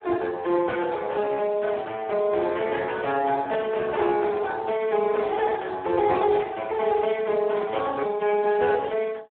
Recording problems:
phone line; 300 Hz to 3.3 kHz, Speex

